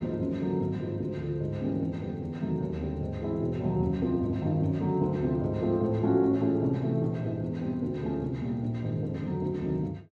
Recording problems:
none

